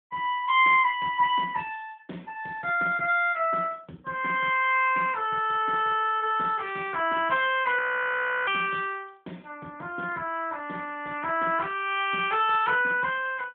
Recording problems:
phone line; 220 Hz to 3.4 kHz, AMR-NB
audio freezing; at 8 s for 0.5 s

